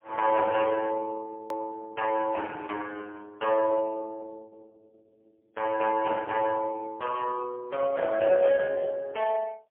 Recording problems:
telephone audio; 390 Hz to 2.2 kHz, AMR-NB, then MP3
hard cut with a click; at 1.5 s

